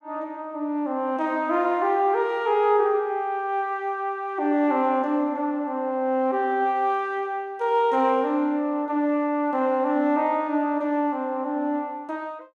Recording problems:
none

